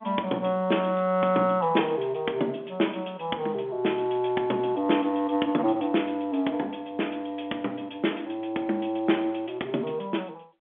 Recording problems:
telephone audio; 220 Hz to 3.5 kHz, G.711

